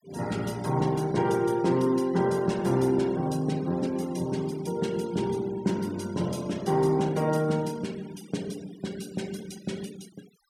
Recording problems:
denoising artefacts; signal-to-artefact ratio 21 dB

